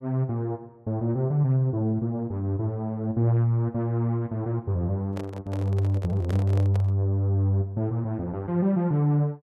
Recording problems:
microphone handling noise; from 5 to 7 s; peak -7 dB vs average level

